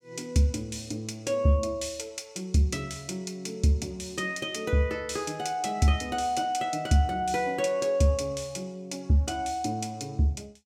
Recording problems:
none

